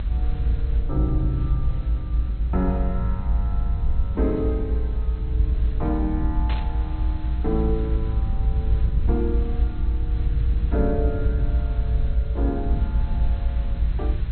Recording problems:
low-pass filter; nothing above 4.2 kHz
hiss; SNR 20 dB
rumble; below 62 Hz, SNR -5 dB
static burst; at 6.5 s; peak -2 dB vs average level

